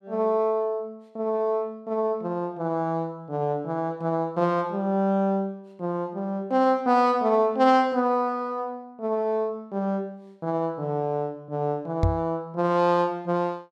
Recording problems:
microphone thump; at 12 s; peak +5 dB vs average level

